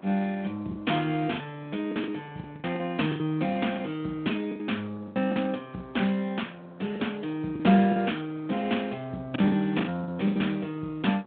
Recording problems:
phone line; 110 Hz to 3.7 kHz, Speex
wind on the microphone; below 940 Hz, SNR 24 dB
lost packets; 9% of the sound replaced, filled with the last packet

